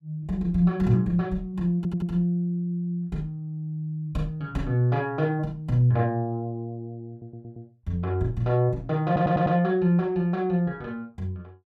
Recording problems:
stutter; at 2 s, at 7 s and at 9 s

